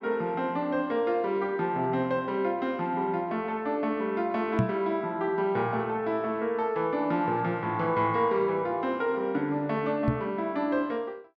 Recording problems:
knock on the microphone; at 4.5 s and at 10 s; peak +6 dB vs average level

